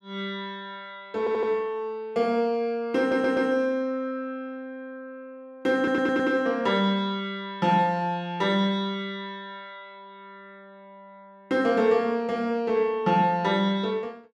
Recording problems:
audio stuttering; at 1 s, at 3 s and at 6 s

